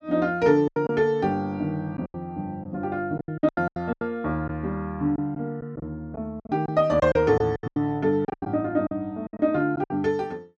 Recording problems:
lost packets; 12% of the sound replaced, filled with silence

